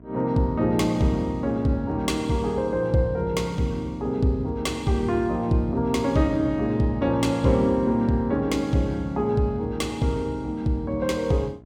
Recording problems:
electrical hum; 60 Hz, harmonics up to 1 kHz, SNR 25 dB

